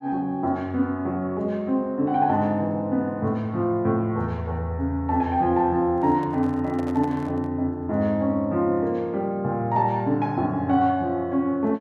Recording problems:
microphone handling noise; from 6 to 7.5 s; peak -10 dB vs average level

